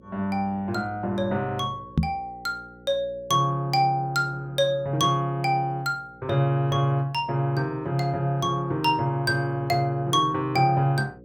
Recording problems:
hum; 60 Hz, harmonics up to 540 Hz, SNR 24 dB
microphone bump; at 2 s; peak +7 dB vs average level

